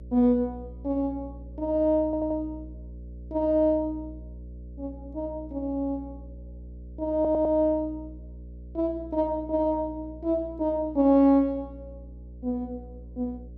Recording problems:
hum; 60 Hz, harmonics up to 540 Hz, SNR 17 dB
audio stuttering; at 2 s and at 7 s

